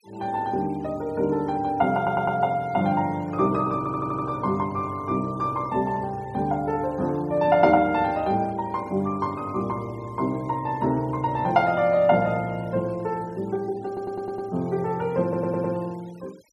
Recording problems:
denoising artefacts; signal-to-artefact ratio 27 dB
stutter; 4 times, first at 2 s

